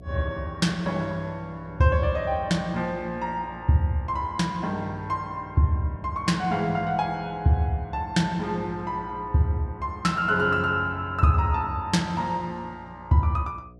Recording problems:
mains hum; 60 Hz, harmonics up to 720 Hz, SNR 21 dB

